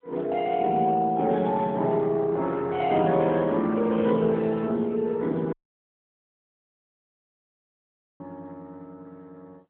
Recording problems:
phone line; 130 Hz to 3.6 kHz, AMR-NB
audio cutting out; at 5.5 s for 2.5 s

